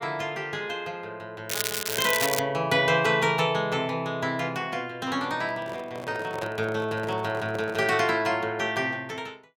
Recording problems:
crackling; at 1.5 s; loose cable, SNR 2 dB
microphone handling noise; from 5.5 to 8 s; peak -4 dB vs average level

